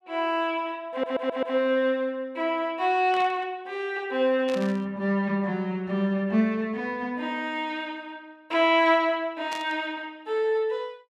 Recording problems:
audio stuttering; at 1 s
static burst; at 3 s, at 4.5 s and at 9.5 s; peak -7 dB vs average level

